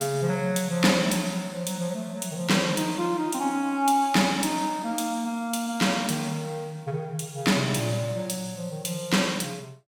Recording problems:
none

